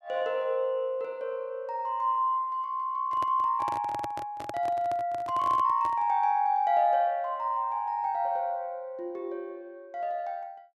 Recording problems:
handling noise; from 3 to 6 s; peak -5 dB vs average level

